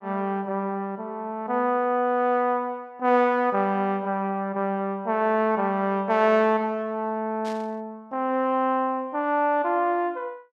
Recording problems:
burst of static; at 7.5 s; peak -13 dB vs average level

